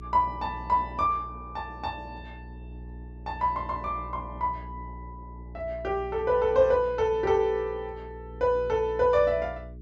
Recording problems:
low-pass filter; nothing above 8 kHz
hum; 60 Hz, harmonics up to 420 Hz, SNR 16 dB

